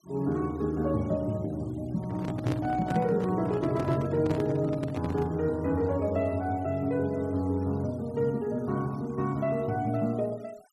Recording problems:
noise reduction artefacts; signal-to-artefact ratio 25 dB
handling noise; from 2 to 5.5 s; peak +1 dB vs average level

